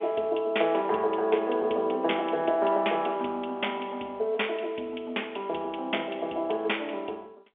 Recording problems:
phone line; 280 Hz to 3.6 kHz, G.711

